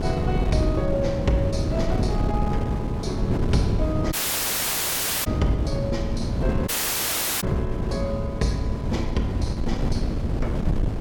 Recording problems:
wind on the microphone; below 210 Hz, SNR -1 dB
dropout; at 4 s for 1 s and at 6.5 s for 0.5 s

